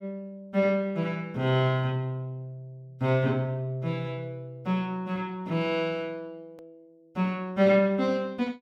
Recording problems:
edit click; at 6.5 s

